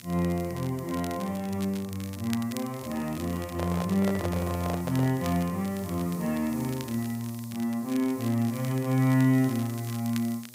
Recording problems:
hum; 60 Hz, harmonics up to 1.2 kHz, SNR 25 dB
hiss; SNR 19 dB
crackle; vinyl, SNR 18 dB
handling noise; from 3.5 to 5 s; peak -2 dB vs average level

